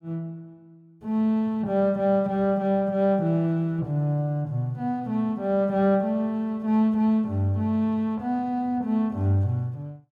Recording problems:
none

